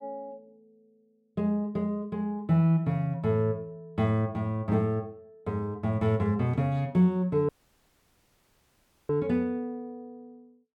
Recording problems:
audio cutting out; at 7.5 s for 1.5 s

